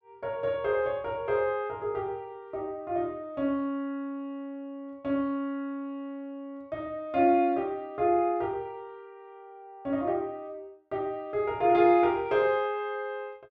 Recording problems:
none

